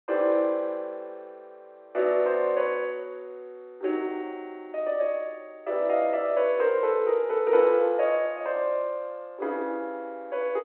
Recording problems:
telephone audio; 280 Hz to 3.2 kHz, G.711

